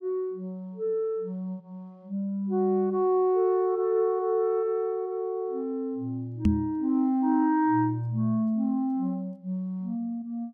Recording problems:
knock on the microphone; at 6.5 s; peak +8 dB vs average level

